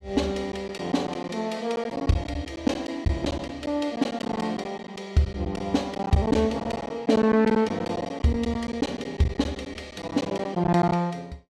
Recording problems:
lost packets; 10% of the sound replaced, filled with silence

